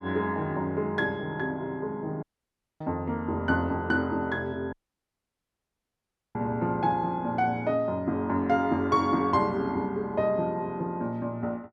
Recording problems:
audio cutting out; at 2 s for 0.5 s and at 4.5 s for 1.5 s

